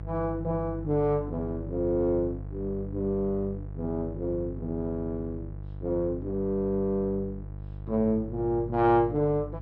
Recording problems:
hum; 50 Hz, harmonics up to 650 Hz, SNR 10 dB

